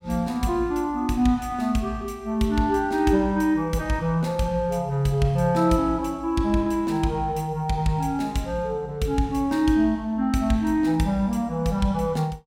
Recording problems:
none

